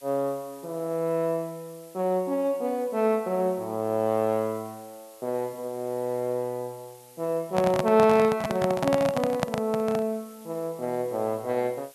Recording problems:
background hiss; slope +2 dB per octave, SNR 24 dB
handling noise; from 7.5 to 10 s; peak +4 dB vs average level

